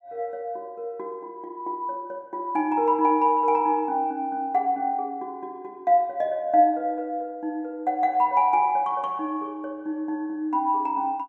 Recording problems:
none

